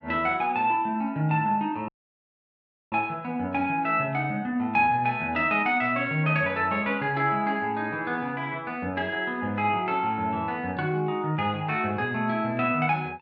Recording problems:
dropout; at 2 s for 1 s

